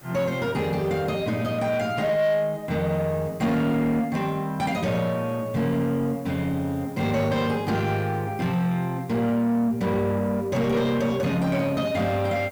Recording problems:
distortion; soft clipping, signal-to-distortion ratio 12 dB
hiss; slope -5 dB per octave, SNR 25 dB

